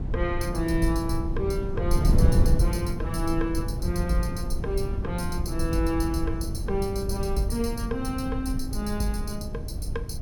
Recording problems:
wind noise; below 110 Hz, SNR 0 dB

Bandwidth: 17 kHz